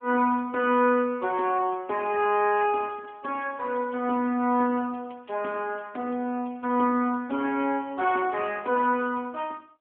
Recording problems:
telephone audio; 190 Hz to 3.3 kHz, AMR-NB

